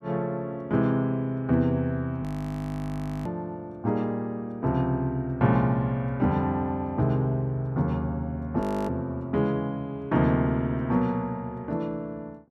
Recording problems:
audio freezing; at 2 s for 1 s and at 8.5 s

